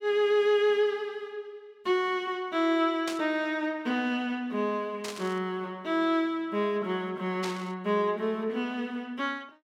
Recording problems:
static burst; at 3 s, at 5 s and at 7.5 s; peak -3 dB vs average level

